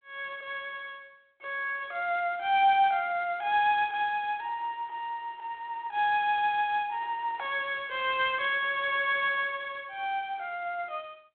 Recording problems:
telephone audio; 280 Hz to 3.5 kHz, G.726

